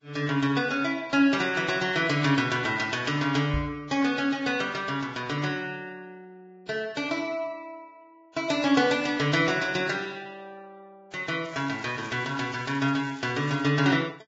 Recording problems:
lossy compression; Vorbis, log-spectral distance 4 dB, nothing above 7.3 kHz
microphone bump; at 3.5 s; peak -1 dB vs average level
crackling; from 11 to 14 s; loose cable, SNR 25 dB

